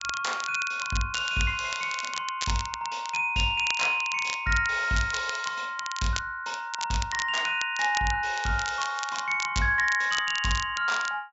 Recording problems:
low-pass filter; nothing above 8 kHz
crackle; vinyl, SNR 10 dB

